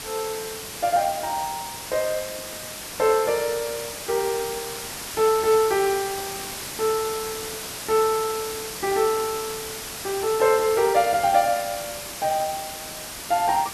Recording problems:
hiss; slope -1 dB per octave, SNR 8 dB

